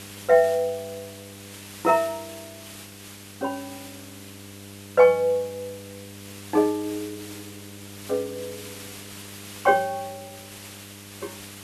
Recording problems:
mains hum; 50 Hz, harmonics up to 1 kHz, SNR 22 dB
background hiss; slope 0 dB per octave, SNR 17 dB

